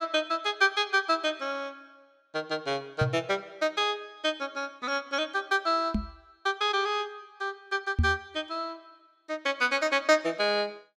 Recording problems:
microphone thump; at 3 s, at 6 s and at 8 s; peak +6 dB vs average level

